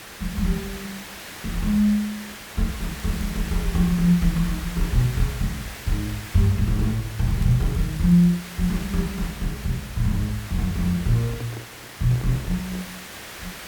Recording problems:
background hiss; SNR 13 dB
crackle; at 2.5 s and from 7.5 to 8.5 s; loose cable, SNR 25 dB
handling noise; from 11 to 13 s; peak -11 dB vs average level

